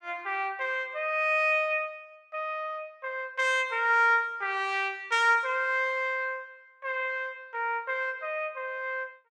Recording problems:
none

